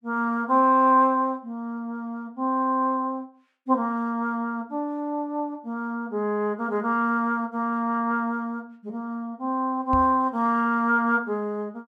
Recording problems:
knock on the microphone; at 10 s; peak -2 dB vs average level

